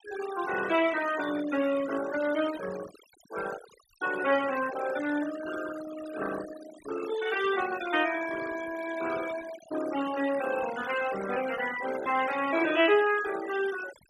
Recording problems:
denoising artefacts; signal-to-artefact ratio 12 dB

